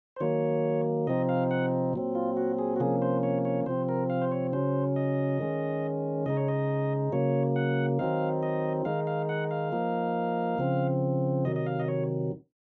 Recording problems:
none

